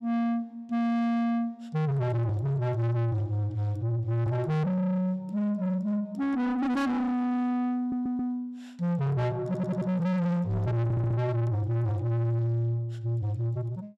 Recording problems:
distortion; soft clipping, signal-to-distortion ratio 6 dB
audio stuttering; at 8 s, at 9.5 s and at 11 s

